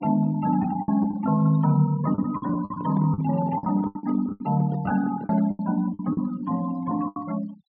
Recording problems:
low-pass filter; nothing above 5.1 kHz
denoising artefacts; signal-to-artefact ratio 22 dB
packet loss; 12% of the sound replaced, filled with the last packet
microphone handling noise; from 2.5 to 5.5 s; peak -10 dB vs average level

